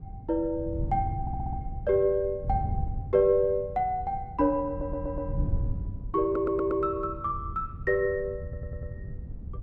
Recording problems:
wind on the microphone; below 120 Hz, SNR 8 dB
stutter; 4 times, first at 1 s

